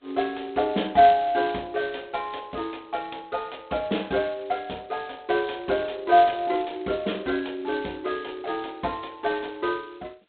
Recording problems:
phone line; 220 Hz to 3.9 kHz, G.726

